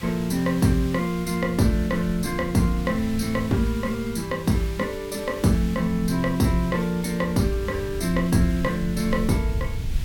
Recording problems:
background hiss; SNR 18 dB
wind on the microphone; below 100 Hz, SNR 13 dB

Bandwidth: 17 kHz